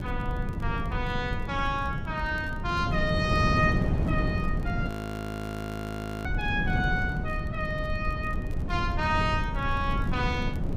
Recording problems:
rumble; below 100 Hz, SNR 7 dB
wind on the microphone; below 240 Hz, SNR 1 dB
crackling; vinyl, SNR 30 dB
frozen audio; at 5 s for 1.5 s

